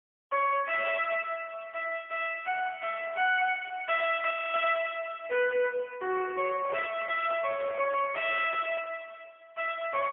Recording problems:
phone line; 320 Hz to 3.7 kHz, AMR-NB, then MP3
distorted audio; soft clipping, signal-to-distortion ratio 10 dB
crackle; from 2.5 to 5 s; loose cable, SNR 27 dB
audio freezing; at 4.5 s
handling noise; from 6.5 to 9 s; peak -4 dB vs average level

